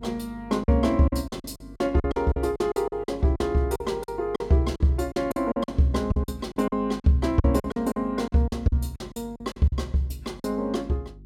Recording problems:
hum; 50 Hz, harmonics up to 400 Hz, SNR 21 dB
packet loss; 14% of the sound replaced, filled with silence

